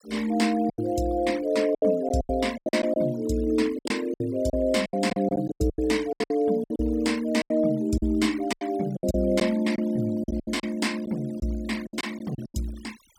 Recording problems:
denoising artefacts; signal-to-artefact ratio 20 dB
packet loss; 14% of the sound replaced, filled with silence

